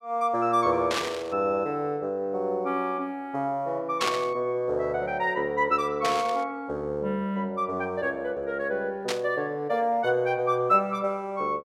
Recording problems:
static burst; 4 times, first at 1 s; peak +3 dB vs average level

